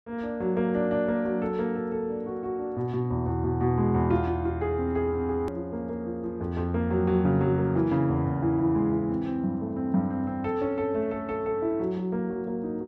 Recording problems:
hard cut with a click; at 5.5 s

